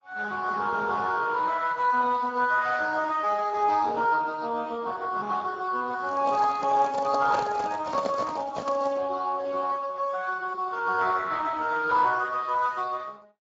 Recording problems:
codec artefacts; Speex, then AAC, log-spectral distance 4 dB
microphone handling noise; from 6 to 9 s; peak 0 dB vs average level

